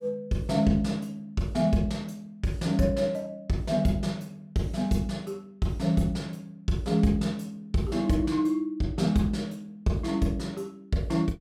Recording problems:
none

